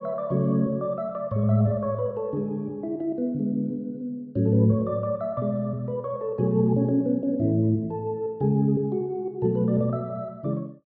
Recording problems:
none

